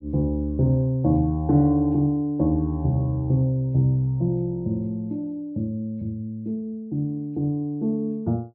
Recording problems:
low-pass filter; nothing above 5.5 kHz

